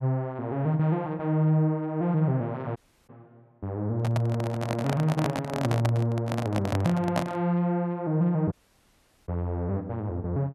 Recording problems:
dropout; at 3 s and at 8.5 s for 1 s
handling noise; from 4 to 7.5 s; peak +3 dB vs average level

